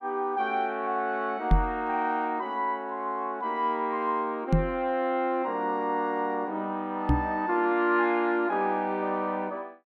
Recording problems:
microphone thump; at 1.5 s, at 4.5 s and at 7 s; peak +8 dB vs average level

